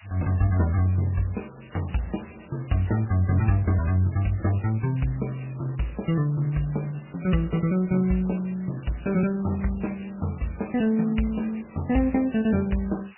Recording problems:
lossy compression; MP3, log-spectral distance 15 dB, nothing above 2.9 kHz
hiss; SNR 25 dB

